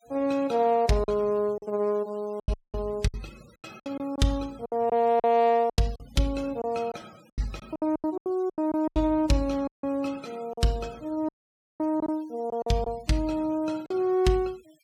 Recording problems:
noise reduction artefacts; signal-to-artefact ratio 25 dB
lost packets; 10% of the sound replaced, filled with silence
dropout; at 2.5 s, at 9.5 s and at 11 s for 0.5 s

